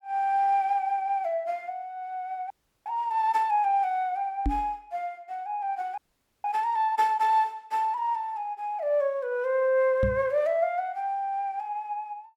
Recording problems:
frozen audio; at 2.5 s and at 6 s
microphone bump; at 4.5 s and at 10 s; peak +2 dB vs average level

